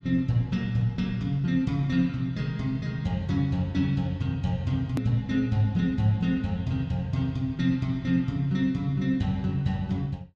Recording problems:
hard cut with a click; at 5 s

